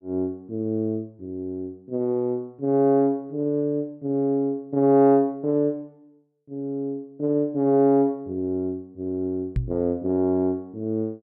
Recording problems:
microphone bump; at 9.5 s; peak +2 dB vs average level

